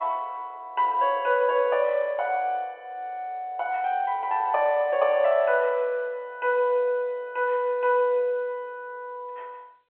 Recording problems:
phone line; 340 Hz to 3.6 kHz, G.711

